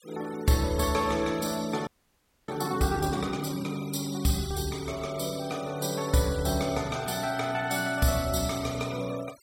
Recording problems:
noise reduction artefacts; signal-to-artefact ratio 17 dB
frozen audio; at 2 s for 0.5 s

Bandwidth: 16.5 kHz